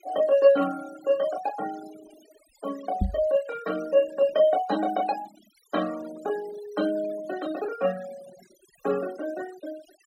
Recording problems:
denoising artefacts; signal-to-artefact ratio 18 dB
microphone thump; at 3 s; peak +4 dB vs average level

